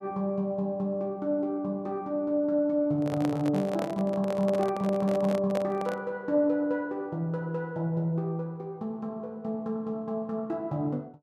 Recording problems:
handling noise; from 3 to 6 s; peak 0 dB vs average level

